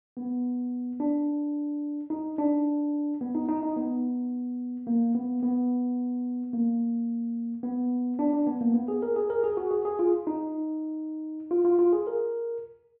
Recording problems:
none

